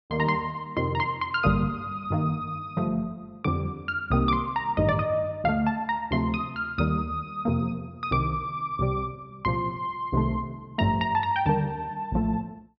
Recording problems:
treble cut off; nothing above 5.5 kHz

